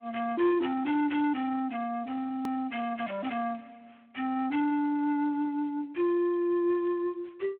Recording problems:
phone line; 280 Hz to 3.5 kHz, Speex
distorted audio; soft clipping, signal-to-distortion ratio 14 dB
click at an edit; at 2.5 s

